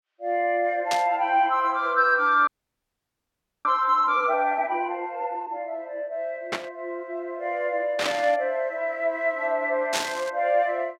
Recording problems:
burst of static; 4 times, first at 1 s; peak +2 dB vs average level
frozen audio; at 2.5 s for 1 s

